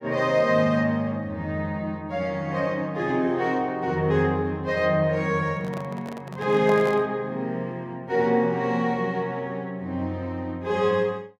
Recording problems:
microphone handling noise; from 5.5 to 7 s; peak -5 dB vs average level

